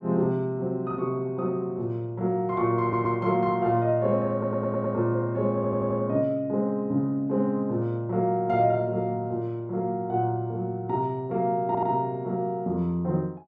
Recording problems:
stutter; 4 times, first at 3 s

